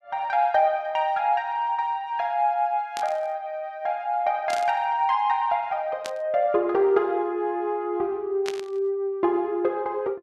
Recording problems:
static burst; 4 times, first at 3 s; peak -4 dB vs average level

